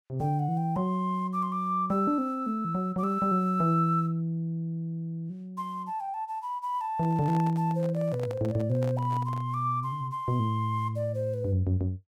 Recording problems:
handling noise; from 7 to 9.5 s; peak -9 dB vs average level

